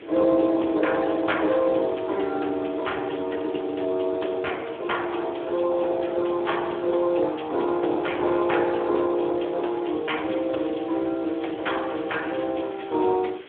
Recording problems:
phone line; 260 Hz to 3.7 kHz, Speex
hiss; SNR 22 dB
wind noise; below 490 Hz, SNR 21 dB

